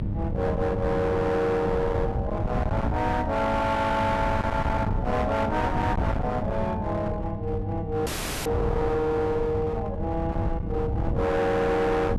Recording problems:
distorted audio; hard clipping, uneven, signal-to-distortion ratio 7 dB
hum; 50 Hz, harmonics up to 600 Hz, SNR 9 dB
wind noise; below 220 Hz, SNR 5 dB
frozen audio; at 8 s

